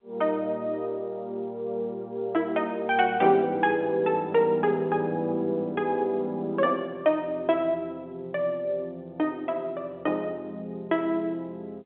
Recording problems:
phone line; 260 Hz to 3.7 kHz, G.711

